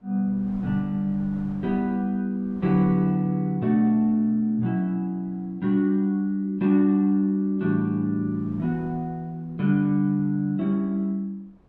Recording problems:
wind noise; below 340 Hz, SNR 25 dB

